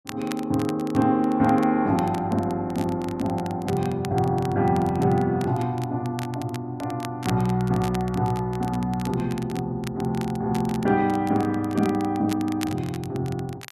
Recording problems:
crackling; vinyl, SNR 18 dB

